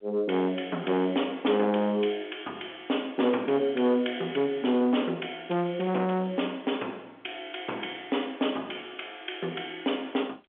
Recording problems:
phone line; 240 Hz to 3.5 kHz, G.711
distorted audio; soft clipping, signal-to-distortion ratio 8 dB

